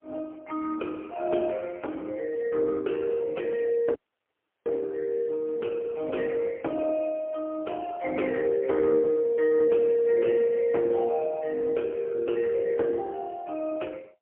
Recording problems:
phone line; 260 Hz to 3.8 kHz, AMR-NB, then MP3
dropout; at 4 s for 0.5 s

